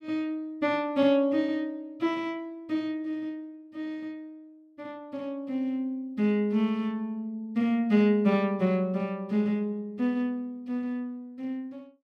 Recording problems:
none

